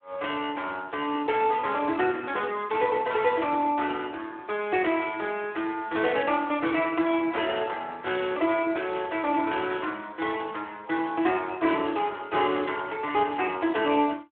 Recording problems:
phone line; 240 Hz to 3.5 kHz, Speex

